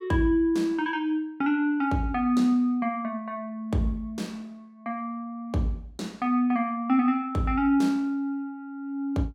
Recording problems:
none

